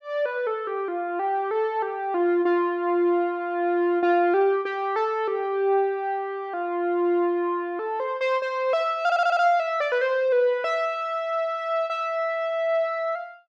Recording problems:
audio stuttering; at 9 s

